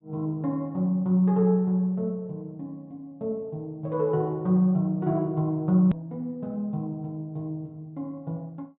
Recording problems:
low-pass filter; nothing above 3.8 kHz
click at an edit; at 6 s

